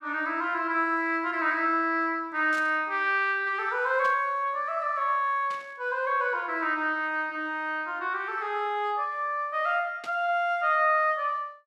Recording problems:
burst of static; 4 times, first at 2.5 s; peak -11 dB vs average level

